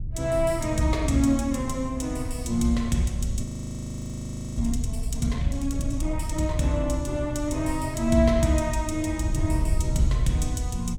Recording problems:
wind noise; below 96 Hz, SNR 6 dB
frozen audio; at 3.5 s for 1 s

